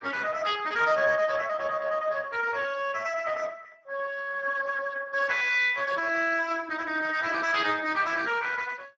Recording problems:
codec artefacts; Speex, log-spectral distance 5 dB

